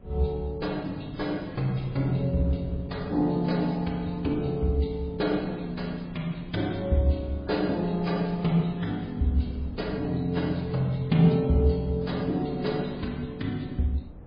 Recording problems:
codec artefacts; MP3, log-spectral distance 3 dB, nothing above 4.1 kHz
hum; 60 Hz, harmonics up to 600 Hz, SNR 28 dB
wind on the microphone; below 200 Hz, SNR 19 dB

